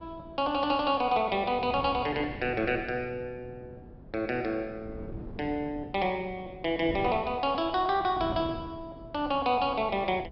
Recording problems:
low-pass filter; nothing above 5.5 kHz
wind noise; below 310 Hz, SNR 16 dB

